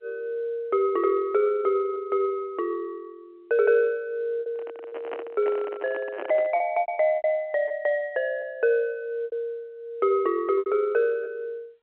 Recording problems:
phone line; 300 Hz to 3.4 kHz, G.711
packet loss; 6% of the sound replaced, filled with repeated pitch periods
microphone handling noise; from 4.5 to 6.5 s; peak -5 dB vs average level

